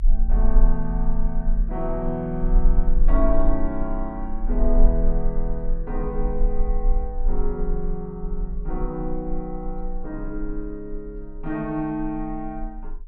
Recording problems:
low-frequency rumble; below 34 Hz, strongest tone 22 Hz, SNR -2 dB

